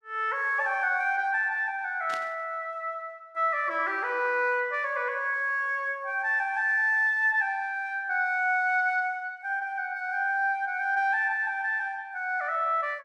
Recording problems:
static burst; at 2 s; peak -9 dB vs average level

